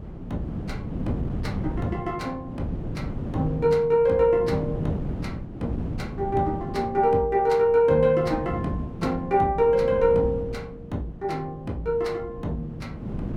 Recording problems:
wind on the microphone; below 260 Hz, SNR 10 dB

